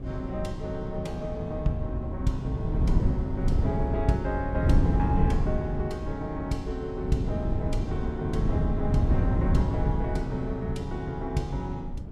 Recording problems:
wind on the microphone; below 150 Hz, SNR -2 dB

